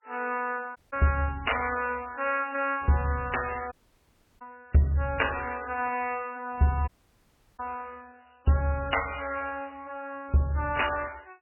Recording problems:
lossy compression; MP3, log-spectral distance 6 dB, nothing above 2.9 kHz
dropout; at 1 s, at 3.5 s for 0.5 s and at 7 s for 0.5 s

